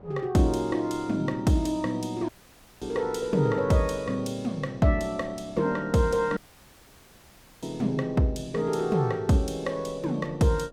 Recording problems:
wind on the microphone; below 620 Hz, SNR 24 dB
audio cutting out; at 2.5 s for 0.5 s and at 6.5 s for 1.5 s

